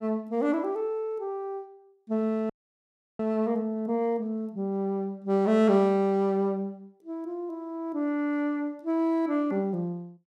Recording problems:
frozen audio; at 2.5 s for 0.5 s

